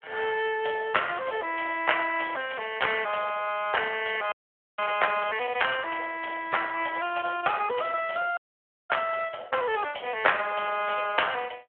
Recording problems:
telephone audio; 340 Hz to 3.3 kHz, Speex
audio freezing; at 4.5 s and at 8.5 s for 0.5 s

